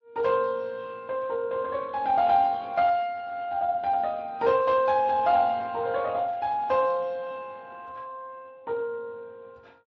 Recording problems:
lossy codec; AAC, then Speex, log-spectral distance 2 dB

